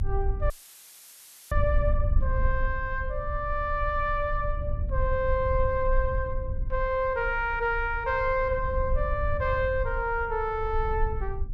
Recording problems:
low-frequency rumble; below 66 Hz, strongest tone 28 Hz, SNR 4 dB
audio cutting out; at 0.5 s for 1 s; filled with static

